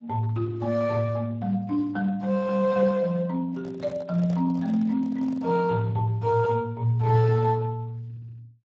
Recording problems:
codec artefacts; Speex, log-spectral distance 2 dB
handling noise; from 3.5 to 5.5 s; peak -13 dB vs average level

